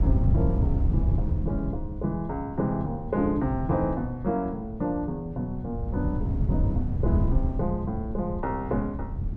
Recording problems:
wind on the microphone; below 130 Hz, SNR -1 dB

